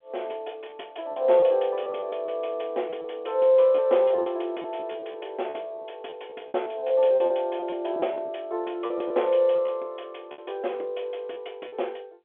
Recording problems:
phone line; 300 Hz to 3.5 kHz, G.711
packet loss; 9% of the sound replaced, filled with repeated pitch periods

